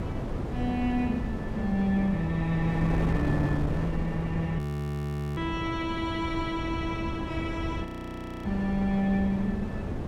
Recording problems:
rumble; below 82 Hz, SNR 16 dB
wind noise; below 350 Hz, SNR 4 dB
frozen audio; at 4.5 s for 1 s and at 8 s for 0.5 s

